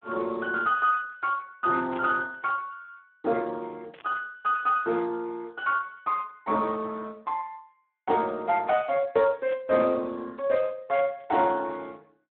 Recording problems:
phone line; 220 Hz to 3.8 kHz, Speex
burst of static; 4 times, first at 2 s; peak -11 dB vs average level

